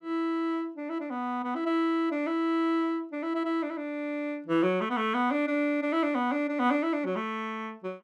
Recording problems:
none

